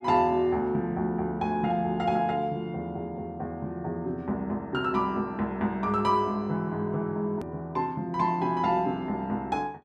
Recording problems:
hard cut with a click; at 7.5 s

